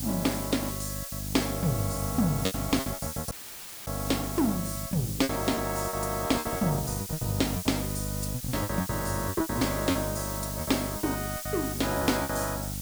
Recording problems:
lossy codec; Opus, log-spectral distance 3 dB
electrical hum; 50 Hz, harmonics up to 800 Hz, SNR 6 dB
background hiss; slope +3 dB per octave, SNR 6 dB
lost packets; 15% of the sound replaced, filled with repeated pitch periods
audio cutting out; at 3.5 s for 0.5 s

